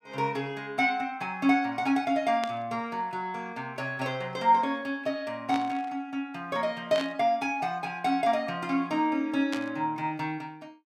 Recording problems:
burst of static; 4 times, first at 2.5 s; peak -3 dB vs average level

